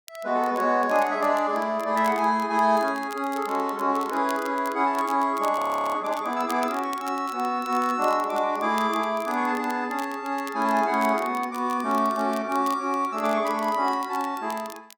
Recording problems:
crackle; vinyl, SNR 21 dB
frozen audio; at 5.5 s

